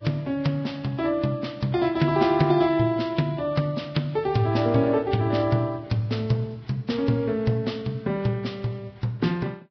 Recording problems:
lossy codec; Vorbis, log-spectral distance 3 dB, nothing above 5.5 kHz

